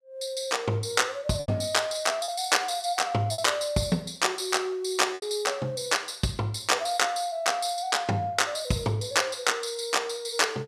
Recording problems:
packet loss; 2% of the sound replaced, filled with repeated pitch periods

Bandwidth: 15 kHz